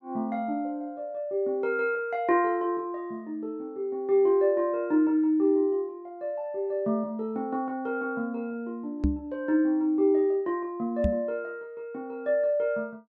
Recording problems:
microphone bump; at 9 s and at 11 s; peak +5 dB vs average level

